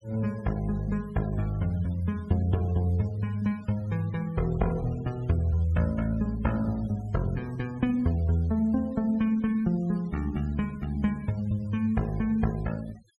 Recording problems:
denoising artefacts; signal-to-artefact ratio 24 dB

